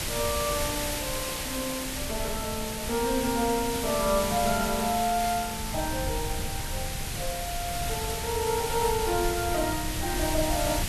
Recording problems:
background hiss; slope -1 dB per octave, SNR 2 dB
low-frequency rumble; below 120 Hz, SNR 9 dB

